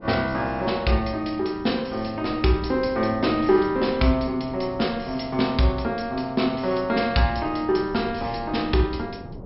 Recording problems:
treble cut off; nothing above 5.4 kHz
wind on the microphone; below 340 Hz, SNR 17 dB

